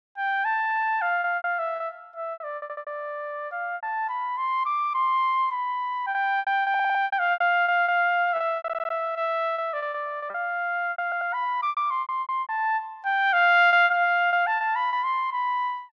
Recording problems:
packet loss; 12% of the sound replaced, filled with repeated pitch periods
stutter; 4 times, first at 2.5 s

